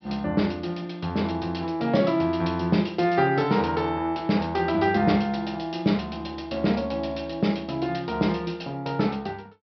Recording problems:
treble missing; nothing above 5.5 kHz

